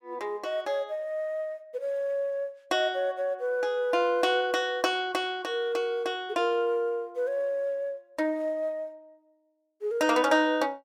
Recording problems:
none

